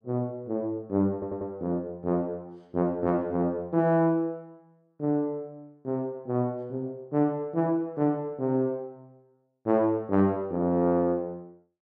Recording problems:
stutter; at 1 s

